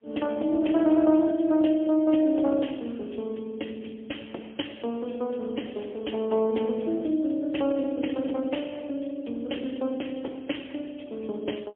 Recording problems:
phone line; 240 Hz to 3.3 kHz, AMR-NB, then MP3

